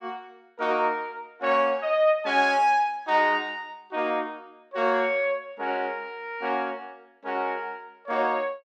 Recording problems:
none

